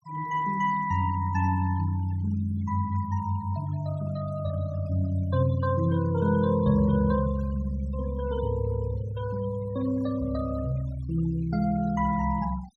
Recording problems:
noise reduction artefacts; signal-to-artefact ratio 21 dB

